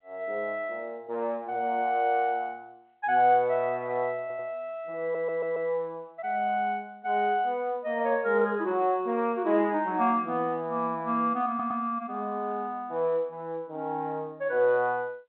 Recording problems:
telephone audio; 170 Hz to 3.9 kHz, G.711
audio stuttering; at 4 s, at 5 s and at 11 s

